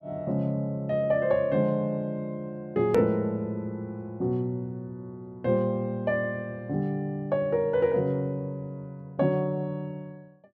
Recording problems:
edit click; at 3 s

